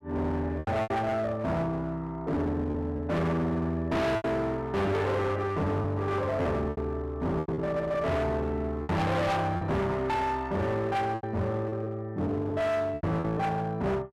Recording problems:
distortion; hard clipping, uneven, signal-to-distortion ratio 5 dB
packet loss; 6% of the sound replaced, filled with repeated pitch periods

